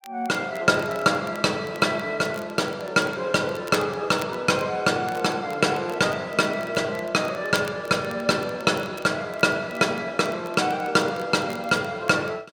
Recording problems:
crackle; vinyl, SNR 22 dB

